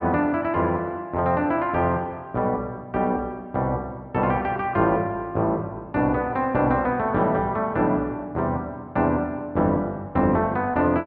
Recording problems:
none

